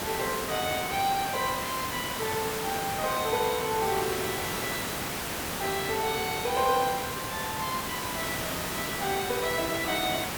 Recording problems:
hiss; slope -3 dB per octave, SNR 2 dB

